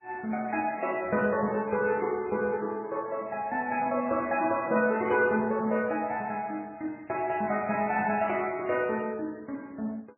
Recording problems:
lossy compression; MP3, log-spectral distance 3 dB, nothing above 2.5 kHz

